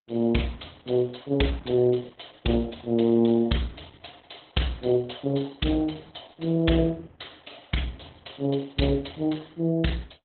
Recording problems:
codec artefacts; Opus, log-spectral distance 8 dB, nothing above 4 kHz

